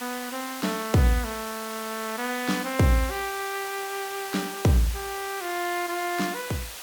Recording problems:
background hiss; slope +1 dB per octave, SNR 9 dB

